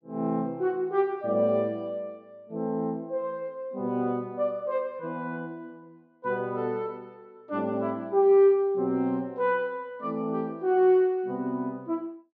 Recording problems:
none

